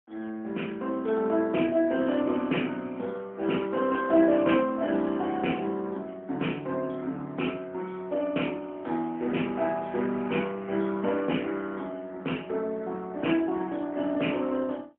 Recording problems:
phone line; 190 Hz to 3.2 kHz, AMR-NB, then MP3

